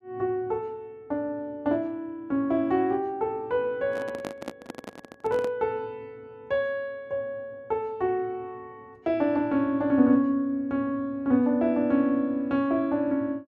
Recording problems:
handling noise; from 4 to 5.5 s; peak -4 dB vs average level

